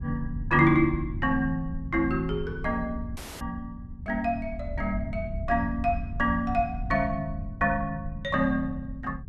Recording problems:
wind noise; below 96 Hz, SNR 10 dB
dropout; at 3 s

